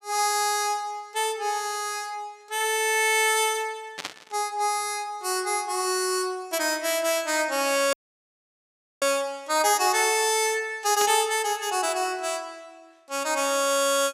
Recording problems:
burst of static; at 4 s and at 11 s; peak -3 dB vs average level
dropout; at 8 s for 1 s

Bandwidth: 15.5 kHz